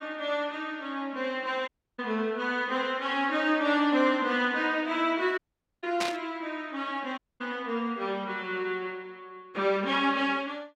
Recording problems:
audio cutting out; at 1.5 s, at 5.5 s and at 7 s
burst of static; at 6 s; peak +2 dB vs average level

